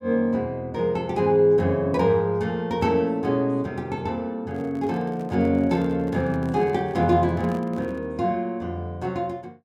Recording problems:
microphone handling noise; from 4.5 to 8 s; peak -11 dB vs average level

